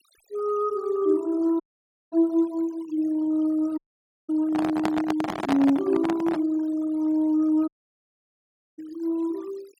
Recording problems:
denoising artefacts; signal-to-artefact ratio 23 dB
dropout; at 1.5 s for 0.5 s, at 4 s for 0.5 s and at 7.5 s for 1 s
microphone handling noise; from 4.5 to 6.5 s; peak +2 dB vs average level

